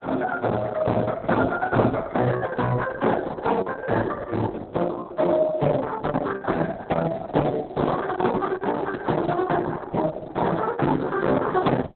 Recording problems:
lossy compression; Speex, then Opus, log-spectral distance 4 dB, nothing above 4 kHz
microphone handling noise; from 7 to 9.5 s; peak -2 dB vs average level

